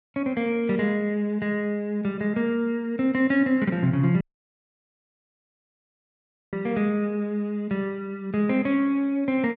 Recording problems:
dropout; at 4 s for 2.5 s

